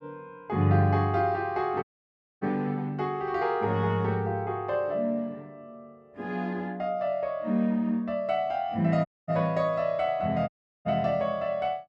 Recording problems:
dropout; at 2 s for 0.5 s, at 9 s and at 10 s

